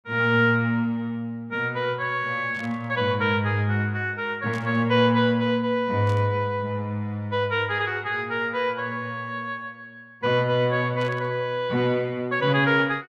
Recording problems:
burst of static; 4 times, first at 2.5 s; peak -14 dB vs average level

